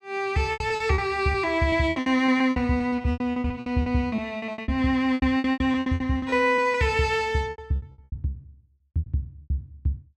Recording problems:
packet loss; 21% of the sound replaced, filled with repeated pitch periods

